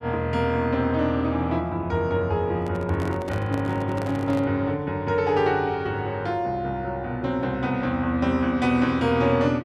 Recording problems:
handling noise; from 2.5 to 4.5 s; peak -7 dB vs average level

